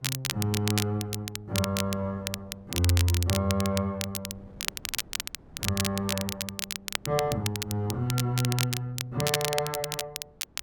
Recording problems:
wind on the microphone; below 340 Hz, SNR 23 dB
crackling; vinyl, SNR 3 dB

